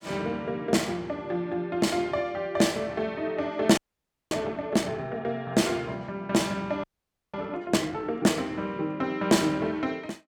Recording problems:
audio freezing; at 4 s for 0.5 s and at 7 s

